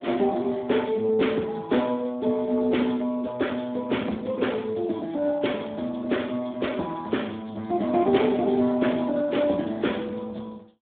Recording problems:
telephone audio; 130 Hz to 3.6 kHz, Speex

